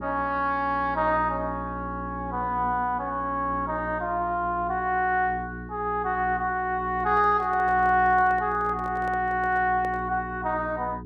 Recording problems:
hum; 60 Hz, harmonics up to 420 Hz, SNR 14 dB
microphone handling noise; from 7 to 10 s; peak -12 dB vs average level

